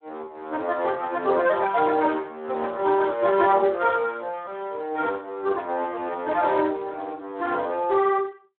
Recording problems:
phone line; 280 Hz to 3.5 kHz, Speex

